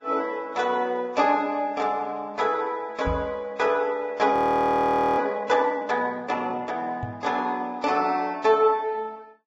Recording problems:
lossy compression; Vorbis, log-spectral distance 2 dB, nothing above 18.9 kHz
microphone thump; at 3 s and at 7 s; peak -2 dB vs average level
audio freezing; at 4.5 s for 1 s

